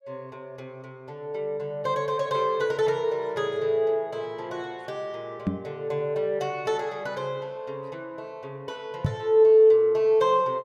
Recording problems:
microphone thump; at 5.5 s and at 9 s; peak +3 dB vs average level

